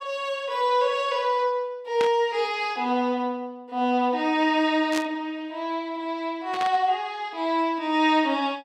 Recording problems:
burst of static; at 2 s, at 5 s and at 6.5 s; peak -2 dB vs average level

